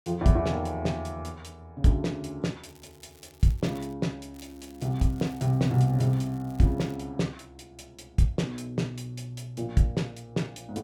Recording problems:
crackle; from 2.5 to 4 s and from 4.5 to 7 s; loose cable, SNR 27 dB

